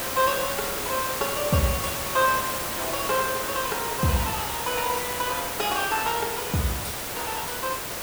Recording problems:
hiss; slope -3 dB per octave, SNR 1 dB

